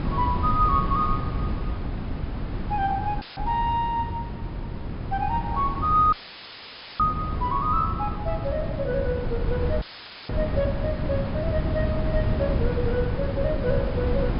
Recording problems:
treble cut off; nothing above 5.5 kHz
wind noise; below 210 Hz, SNR 2 dB
dropout; at 3 s, at 6 s for 1 s and at 10 s; filled with static

